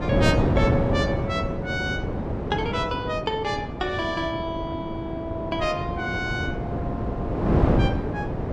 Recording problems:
wind on the microphone; below 450 Hz, SNR -2 dB

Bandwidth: 14.5 kHz